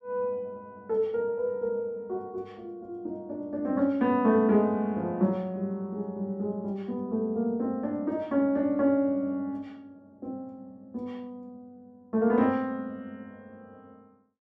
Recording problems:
none

